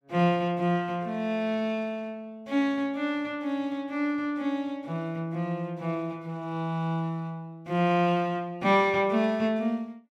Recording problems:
none

